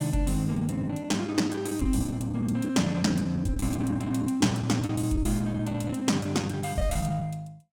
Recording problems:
packet loss; 13% of the sound replaced, filled with the last packet

